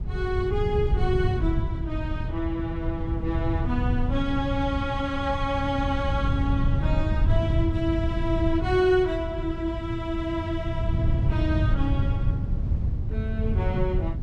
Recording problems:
rumble; below 120 Hz, SNR -1 dB

